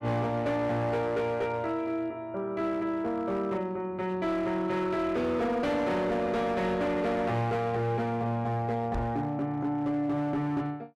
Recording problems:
distorted audio; hard clipping, signal-to-distortion ratio 10 dB
microphone thump; at 9 s; peak -1 dB vs average level

